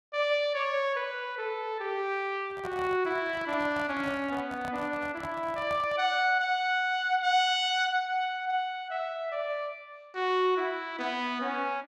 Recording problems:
handling noise; from 2.5 to 6 s; peak -8 dB vs average level

